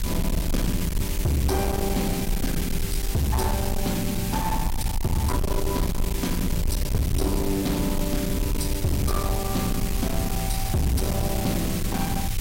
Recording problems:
distorted audio; hard clipping, signal-to-distortion ratio 8 dB
hiss; slope +2 dB per octave, SNR 6 dB
rumble; below 94 Hz, SNR 3 dB

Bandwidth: 16 kHz